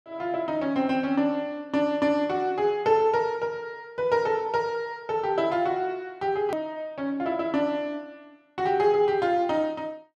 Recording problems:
edit click; at 6.5 s

